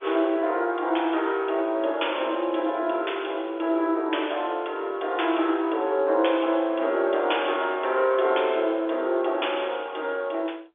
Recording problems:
phone line; 280 Hz to 3.6 kHz, G.711

